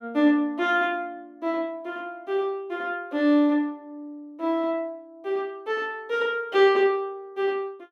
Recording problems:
none

